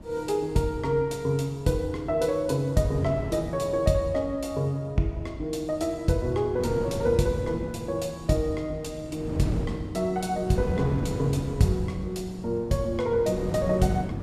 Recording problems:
wind on the microphone; below 330 Hz, SNR 10 dB

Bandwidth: 15 kHz